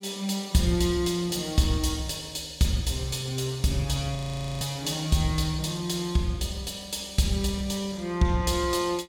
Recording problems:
frozen audio; at 4 s

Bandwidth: 17.5 kHz